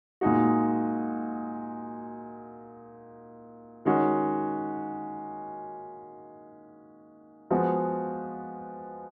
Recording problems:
none

